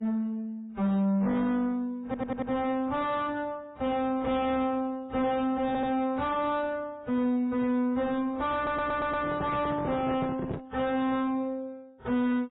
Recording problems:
codec artefacts; MP3, then AAC, log-spectral distance 2 dB, nothing above 3.8 kHz
distortion; soft clipping, signal-to-distortion ratio 7 dB
stutter; at 2 s, at 5.5 s and at 8.5 s
handling noise; from 8.5 to 11 s; peak +1 dB vs average level

